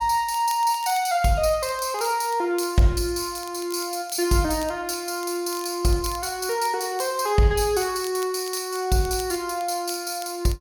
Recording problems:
crackling; vinyl, SNR 20 dB

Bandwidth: 18 kHz